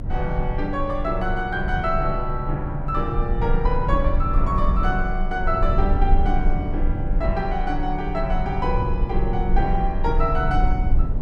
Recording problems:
rumble; below 56 Hz, strongest tone 24 Hz, SNR 1 dB

